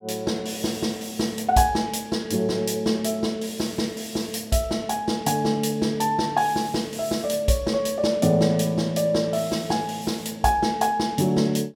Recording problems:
none

